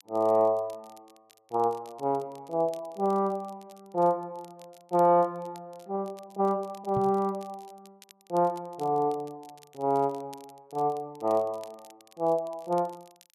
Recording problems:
crackling; vinyl, SNR 28 dB
knock on the microphone; at 7 s; peak -2 dB vs average level

